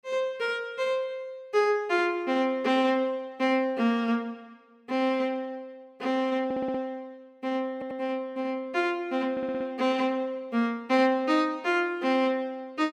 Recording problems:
stutter; at 6.5 s, at 7.5 s and at 9.5 s

